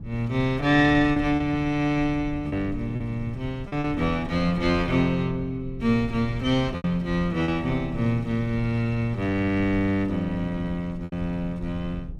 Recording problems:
low-frequency rumble; below 130 Hz, SNR 14 dB
packet loss; 4% of the sound replaced, filled with repeated pitch periods

